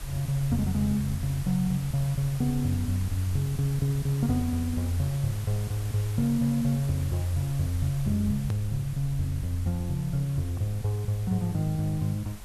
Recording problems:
background hiss; slope -2 dB per octave, SNR 16 dB
low-frequency rumble; below 82 Hz, SNR 15 dB
edit click; at 8.5 s

